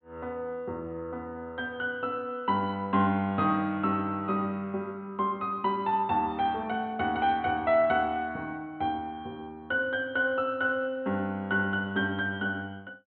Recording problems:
treble missing; nothing above 4 kHz

